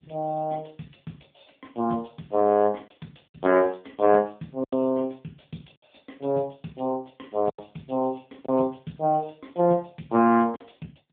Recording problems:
telephone audio; 130 Hz to 3.5 kHz, AMR-NB
lost packets; 4% of the sound replaced, filled with silence

